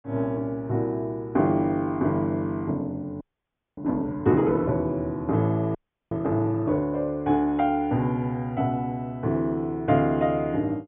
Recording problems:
treble missing; nothing above 3.6 kHz
frozen audio; at 3 s for 0.5 s and at 6 s

